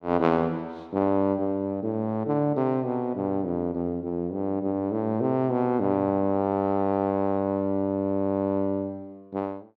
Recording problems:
none

